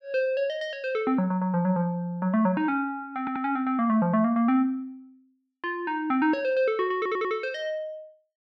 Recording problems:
audio stuttering; at 3 s and at 7 s

